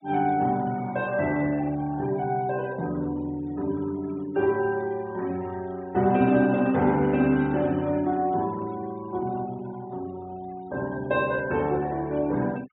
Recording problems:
low-pass filter; nothing above 4 kHz
noise reduction artefacts; signal-to-artefact ratio 23 dB

